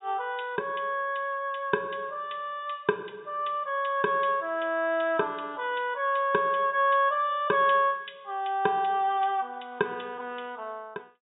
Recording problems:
treble missing; nothing above 4 kHz

